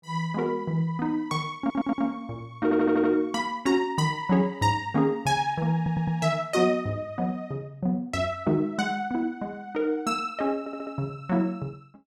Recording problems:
stutter; 4 times, first at 1.5 s

